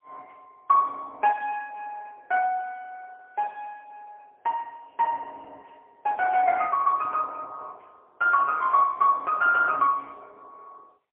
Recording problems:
phone line; 390 Hz to 3.3 kHz, AMR-NB, then MP3

